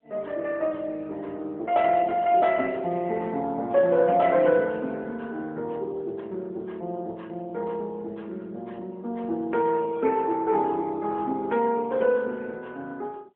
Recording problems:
phone line; 220 Hz to 3.3 kHz, AMR-NB

